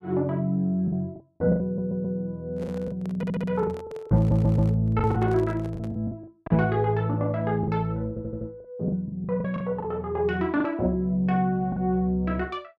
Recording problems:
lost packets; 9% of the sound replaced, filled with the last packet
audio stuttering; 4 times, first at 1.5 s
handling noise; from 2.5 to 6 s; peak -12 dB vs average level

